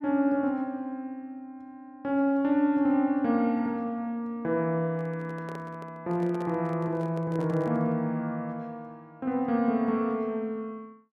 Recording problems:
microphone handling noise; from 5 to 8 s; peak -10 dB vs average level

